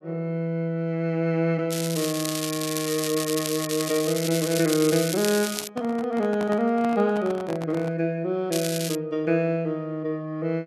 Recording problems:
crackling; from 1.5 to 5.5 s and at 8.5 s; loose cable, SNR 5 dB
microphone handling noise; from 5.5 to 8 s; peak -5 dB vs average level

